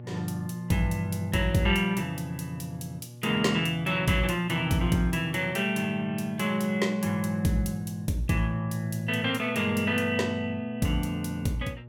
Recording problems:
hum; 60 Hz, harmonics up to 840 Hz, SNR 17 dB

